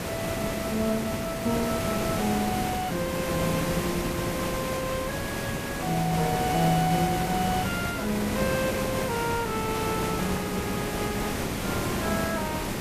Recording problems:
hiss; slope -5 dB per octave, SNR 0 dB

